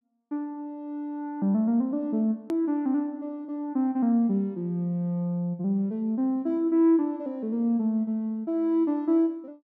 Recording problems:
edit click; at 2.5 s

